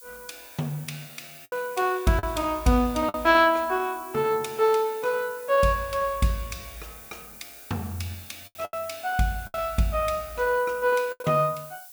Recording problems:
hiss; SNR 18 dB
packet loss; 4% of the sound replaced, filled with the last packet

